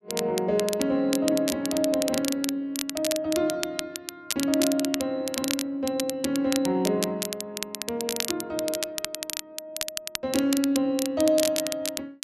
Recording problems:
crackle; vinyl, SNR 5 dB

